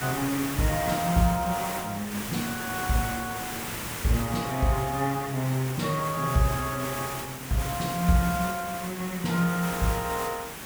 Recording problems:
hiss; slope -3 dB per octave, SNR 6 dB

